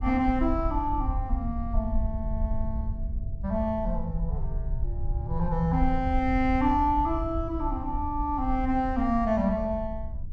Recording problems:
low-frequency rumble; below 70 Hz, SNR 5 dB

